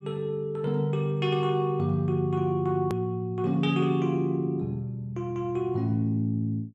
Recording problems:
hard cut with a click; at 3 s

